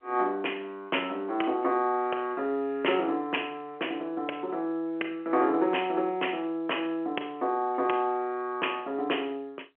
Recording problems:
phone line; 300 Hz to 3.2 kHz, G.711

